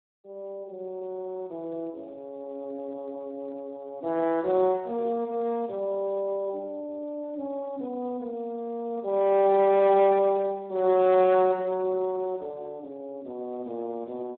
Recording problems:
phone line; 190 Hz to 3.7 kHz, Speex

